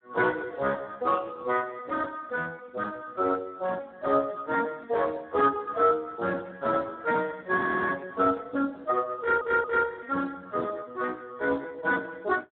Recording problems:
telephone audio; 260 Hz to 2.3 kHz, Speex
audio freezing; at 7.5 s
stutter; at 9 s

